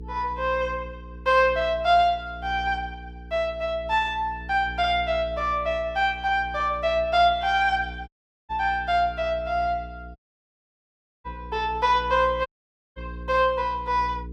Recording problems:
hum; 60 Hz, harmonics up to 480 Hz, SNR 16 dB
dropout; at 8 s, at 10 s for 1 s and at 12 s for 0.5 s

